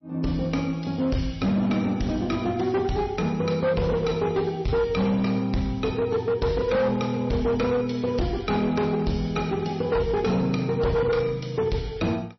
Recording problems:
lossy codec; MP3, log-spectral distance 3 dB, nothing above 5.8 kHz
distorted audio; hard clipping, signal-to-distortion ratio 10 dB

